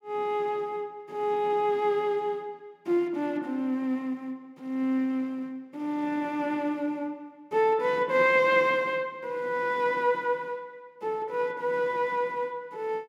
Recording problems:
none

